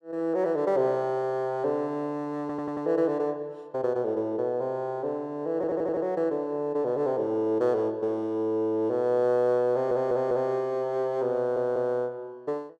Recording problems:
audio stuttering; 4 times, first at 2.5 s

